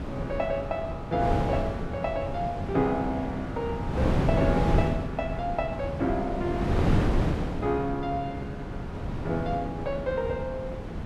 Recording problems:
wind on the microphone; below 360 Hz, SNR 0 dB

